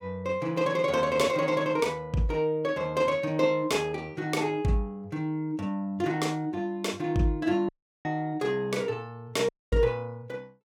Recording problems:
dropout; at 7.5 s and at 9.5 s

